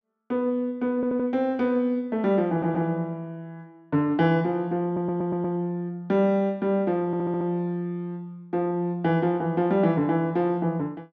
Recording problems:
audio stuttering; 4 times, first at 1 s

